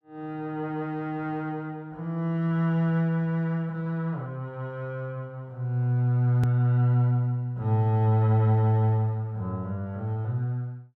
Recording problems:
hard cut with a click; at 6.5 s

